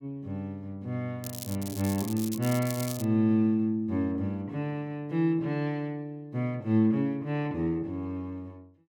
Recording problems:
crackling; from 1 to 3 s; loose cable, SNR 10 dB

